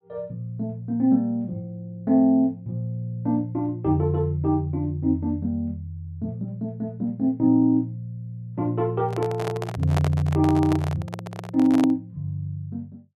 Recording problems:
microphone handling noise; from 9 to 12 s; peak 0 dB vs average level

